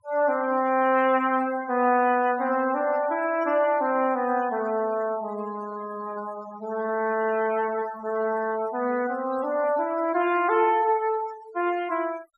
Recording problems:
noise reduction artefacts; signal-to-artefact ratio 18 dB

